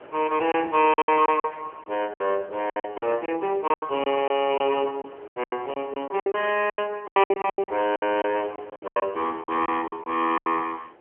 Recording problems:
telephone audio; 300 Hz to 3.1 kHz, AMR-NB
wind on the microphone; below 1.1 kHz, SNR 23 dB
packet loss; 16% of the sound replaced, filled with silence

